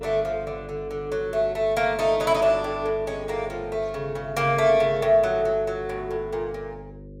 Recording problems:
hum; 50 Hz, harmonics up to 550 Hz, SNR 18 dB

